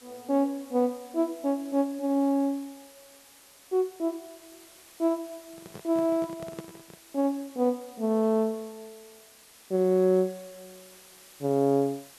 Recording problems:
background hiss; slope 0 dB per octave, SNR 23 dB
handling noise; from 5.5 to 7 s; peak -8 dB vs average level

